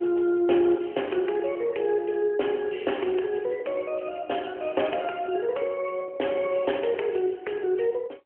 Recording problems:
telephone audio; 280 Hz to 3.2 kHz, AMR-NB

